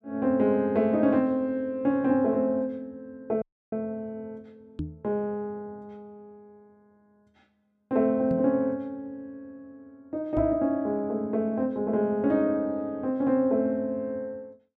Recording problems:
dropout; at 3.5 s
microphone bump; at 5 s, at 8.5 s and at 10 s; peak -1 dB vs average level

